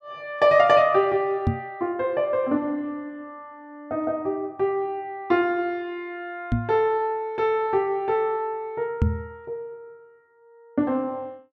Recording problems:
knock on the microphone; at 1.5 s, at 6.5 s and at 9 s; peak +6 dB vs average level

